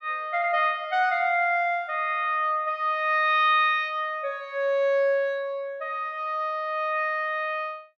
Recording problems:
none

